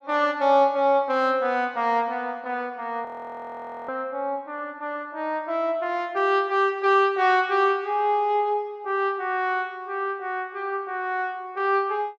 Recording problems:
frozen audio; at 3 s for 1 s

